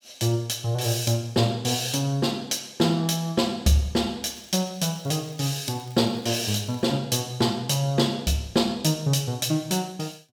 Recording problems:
crackle; from 4.5 to 7 s; loose cable, SNR 27 dB

